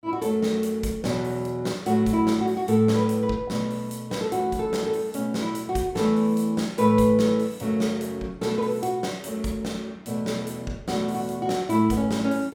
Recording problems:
none

